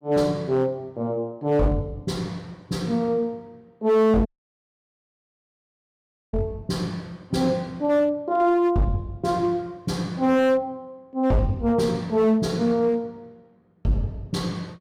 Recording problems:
distorted audio; hard clipping, uneven, signal-to-distortion ratio 10 dB
dropout; at 4.5 s for 2 s

